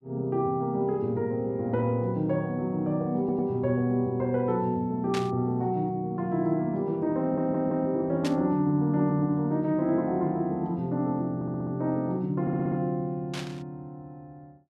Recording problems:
audio stuttering; 4 times, first at 3 s
burst of static; at 5 s, at 8 s and at 13 s; peak -4 dB vs average level

